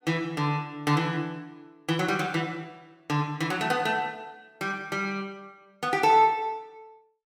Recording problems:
none

